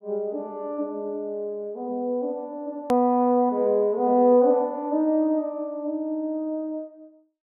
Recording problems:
hard cut with a click; at 3 s

